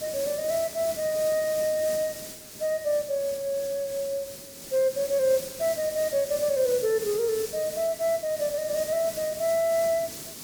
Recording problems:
background hiss; SNR 10 dB

